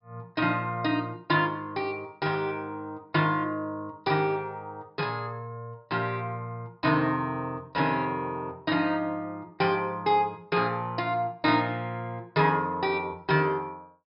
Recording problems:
low-pass filter; nothing above 5.5 kHz

